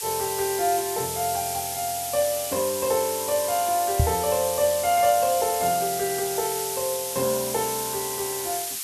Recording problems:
hiss; slope +5 dB per octave, SNR 3 dB
knock on the microphone; at 4 s; peak +7 dB vs average level

